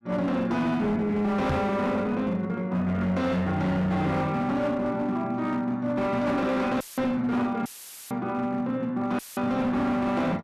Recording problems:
distorted audio; hard clipping, signal-to-distortion ratio 10 dB
knock on the microphone; at 1.5 s; peak +3 dB vs average level
dropout; at 7 s, at 7.5 s and at 9 s; filled with static

